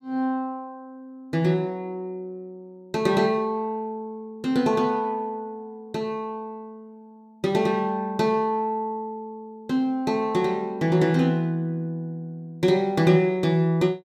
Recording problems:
none

